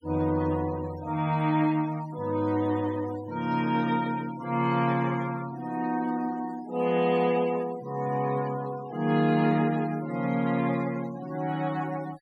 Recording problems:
denoising artefacts; signal-to-artefact ratio 19 dB

